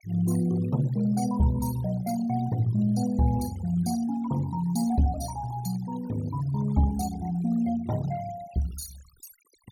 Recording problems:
denoising artefacts; signal-to-artefact ratio 18 dB

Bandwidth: 16.5 kHz